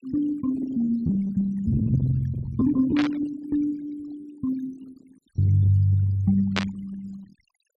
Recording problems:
denoising artefacts; signal-to-artefact ratio 21 dB
packet loss; 15% of the sound replaced, filled with repeated pitch periods
static burst; at 3 s and at 6.5 s; peak +3 dB vs average level

